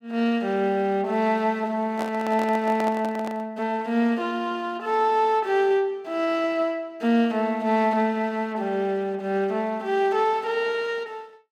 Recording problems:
microphone handling noise; from 2 to 3.5 s; peak -4 dB vs average level

